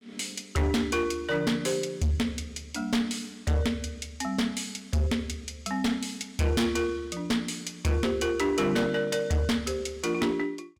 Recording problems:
distortion; hard clipping, uneven, signal-to-distortion ratio 7 dB

